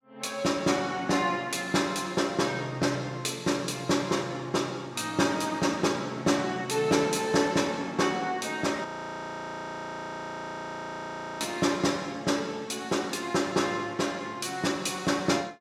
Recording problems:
frozen audio; at 9 s for 2.5 s

